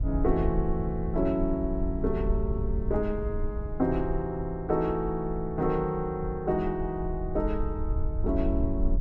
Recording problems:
low-frequency rumble; below 76 Hz, SNR 9 dB
wind on the microphone; below 68 Hz, SNR 6 dB

